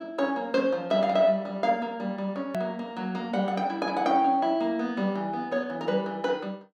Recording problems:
hard cut with a click; at 2.5 s

